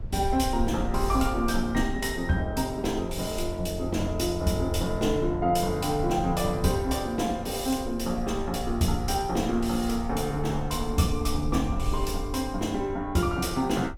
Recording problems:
rumble; below 70 Hz, SNR 10 dB

